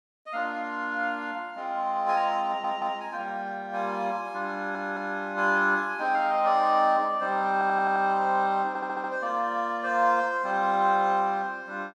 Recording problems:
stutter; 4 times, first at 2.5 s

